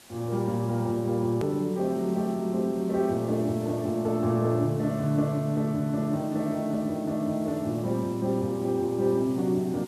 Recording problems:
hiss; slope -2 dB per octave, SNR 23 dB
click at an edit; at 1.5 s

